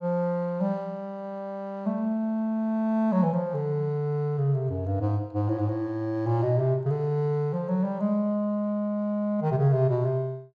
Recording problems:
none

